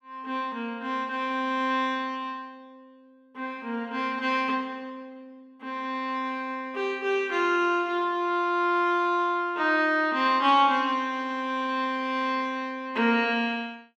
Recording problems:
none

